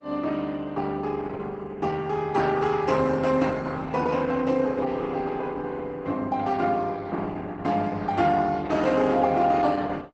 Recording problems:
lossy codec; Opus, log-spectral distance 3 dB, nothing above 8 kHz

